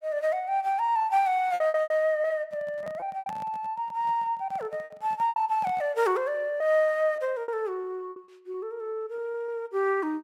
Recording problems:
packet loss; 10% of the sound replaced, filled with repeated pitch periods
microphone handling noise; from 2.5 to 6 s; peak -11 dB vs average level

